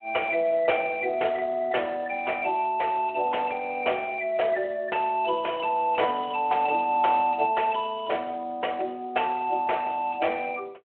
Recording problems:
telephone audio; 340 Hz to 3.1 kHz, Speex

